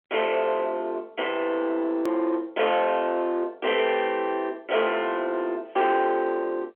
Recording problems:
telephone audio; 280 Hz to 3.3 kHz, G.711
distorted audio; soft clipping, signal-to-distortion ratio 13 dB
hard cut with a click; at 2 s

